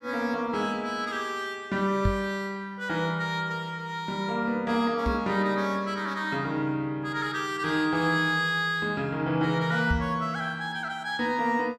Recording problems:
microphone bump; at 2 s, at 5 s and at 10 s; peak +5 dB vs average level

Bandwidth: 14.5 kHz